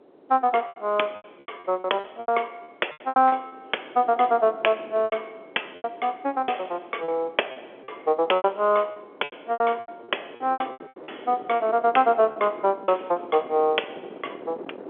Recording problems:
phone line; 320 Hz to 3.4 kHz, G.711
wind noise; below 610 Hz, SNR 20 dB
packet loss; 13% of the sound replaced, filled with repeated pitch periods

